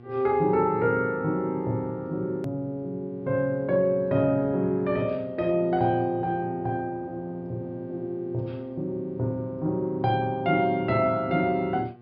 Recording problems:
treble cut off; nothing above 5.5 kHz
hum; 60 Hz, harmonics up to 1.6 kHz, SNR 22 dB
hard cut with a click; at 2.5 s

